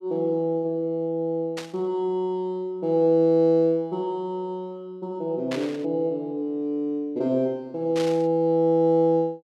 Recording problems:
static burst; at 1.5 s, at 5.5 s and at 8 s; peak -6 dB vs average level

